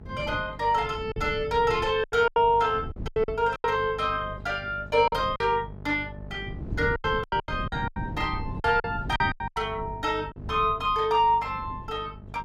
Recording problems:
mains hum; 50 Hz, harmonics up to 900 Hz, SNR 17 dB
wind on the microphone; below 210 Hz, SNR 13 dB
lost packets; 10% of the sound replaced, filled with silence

